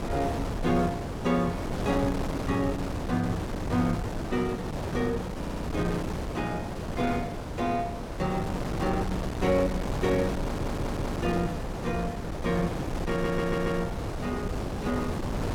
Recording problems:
wind on the microphone; below 580 Hz, SNR 2 dB
audio stuttering; at 5.5 s, at 10 s and at 13 s

